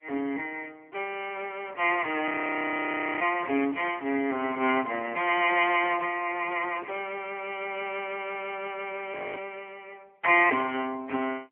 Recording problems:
telephone audio; 260 Hz to 3.1 kHz, AMR-NB
audio freezing; at 2.5 s for 1 s and at 9 s

